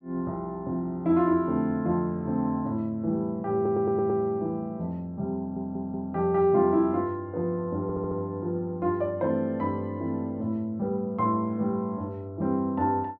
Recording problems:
stutter; at 3.5 s, at 5.5 s and at 8 s

